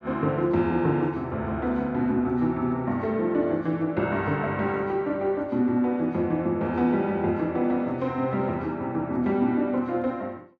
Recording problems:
none

